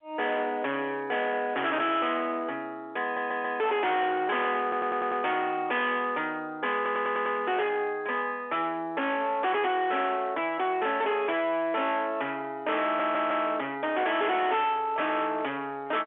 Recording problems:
telephone audio; 280 Hz to 3.5 kHz, G.711
distorted audio; hard clipping, signal-to-distortion ratio 7 dB
stutter; 4 times, first at 3 s

